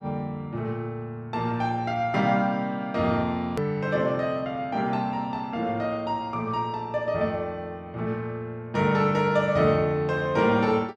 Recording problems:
hard cut with a click; at 3.5 s

